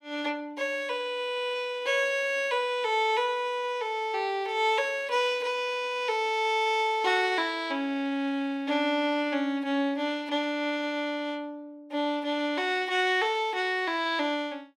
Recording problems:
none

